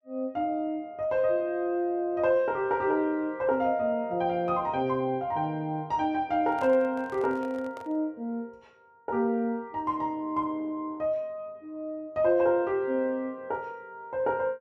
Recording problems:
handling noise; from 6.5 to 8 s; peak -10 dB vs average level

